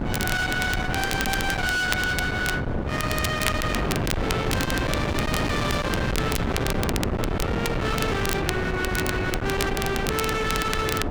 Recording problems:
distorted audio; hard clipping, uneven, signal-to-distortion ratio 6 dB
wind on the microphone; below 820 Hz, SNR 1 dB
crackle; vinyl, SNR 8 dB

